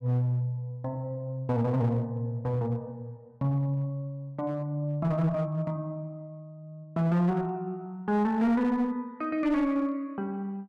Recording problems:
distorted audio; hard clipping, uneven, signal-to-distortion ratio 11 dB

